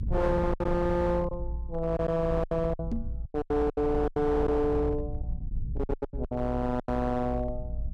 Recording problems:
distorted audio; hard clipping, signal-to-distortion ratio 12 dB
low-frequency rumble; below 74 Hz, SNR 7 dB
lost packets; 13% of the sound replaced, filled with silence
knock on the microphone; at 3 s; peak +1 dB vs average level

